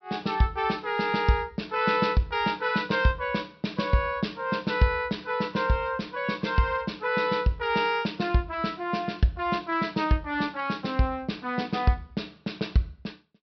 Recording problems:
treble missing; nothing above 5.7 kHz

